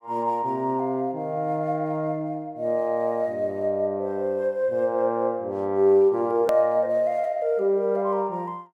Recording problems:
edit click; at 6.5 s

